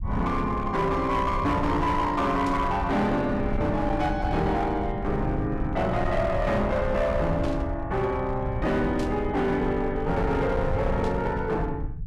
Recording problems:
distortion; hard clipping, signal-to-distortion ratio 11 dB
rumble; below 130 Hz, SNR 7 dB
burst of static; 4 times, first at 2.5 s; peak -11 dB vs average level

